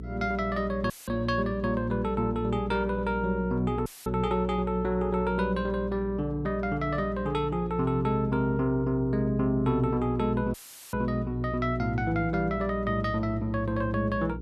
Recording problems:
electrical hum; 60 Hz, harmonics up to 480 Hz, SNR 10 dB
dropout; at 1 s, at 4 s and at 11 s; filled with static

